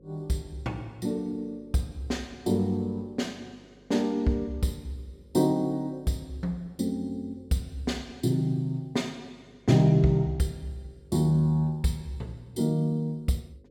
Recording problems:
hum; 50 Hz, harmonics up to 550 Hz, SNR 29 dB

